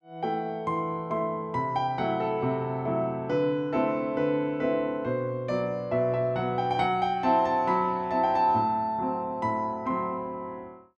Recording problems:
none

